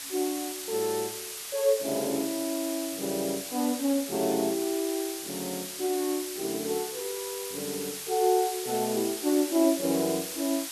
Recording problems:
hiss; slope +2 dB per octave, SNR 6 dB

